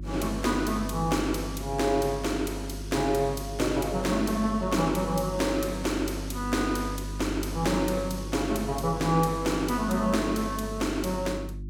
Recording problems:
hum; 50 Hz, harmonics up to 350 Hz, SNR 10 dB

